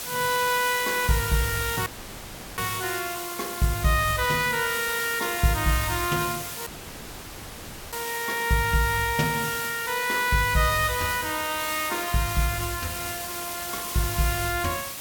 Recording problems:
background hiss; slope -1 dB per octave, SNR 6 dB
audio cutting out; at 2 s for 0.5 s and at 6.5 s for 1.5 s

